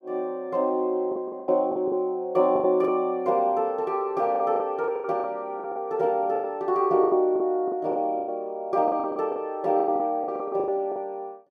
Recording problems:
packet loss; 14% of the sound replaced, filled with the last packet

